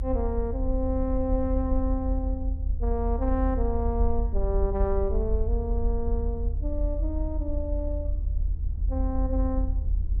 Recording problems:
rumble; below 74 Hz, strongest tone 42 Hz, SNR -2 dB

